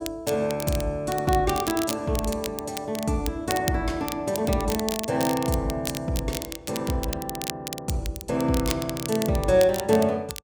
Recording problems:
crackling; vinyl, SNR 9 dB

